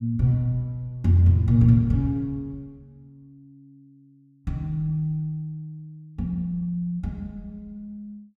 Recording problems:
none

